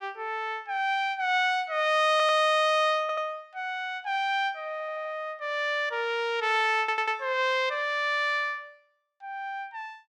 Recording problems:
stutter; 4 times, first at 2 s

